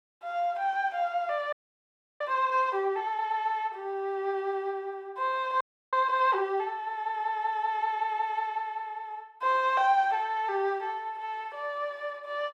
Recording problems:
audio freezing; at 1.5 s for 0.5 s and at 5.5 s

